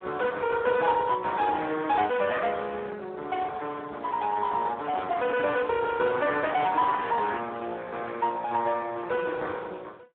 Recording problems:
phone line; 300 Hz to 3.6 kHz, Speex

